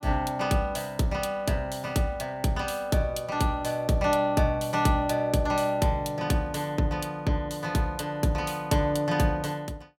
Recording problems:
none

